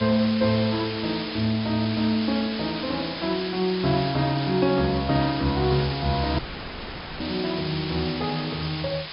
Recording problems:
treble cut off; nothing above 5.5 kHz
hiss; SNR 8 dB
dropout; at 6.5 s for 1 s

